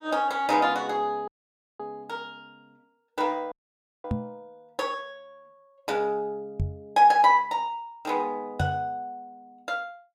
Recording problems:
audio cutting out; at 1.5 s for 0.5 s and at 3.5 s for 0.5 s
knock on the microphone; at 4 s, at 6.5 s and at 8.5 s; peak +2 dB vs average level

